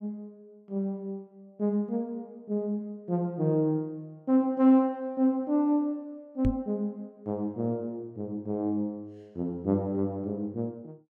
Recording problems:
microphone bump; at 6.5 s; peak +5 dB vs average level

